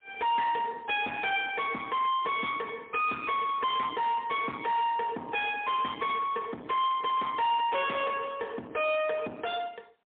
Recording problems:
phone line; 220 Hz to 3.7 kHz, AMR-NB, then MP3
distortion; soft clipping, signal-to-distortion ratio 7 dB

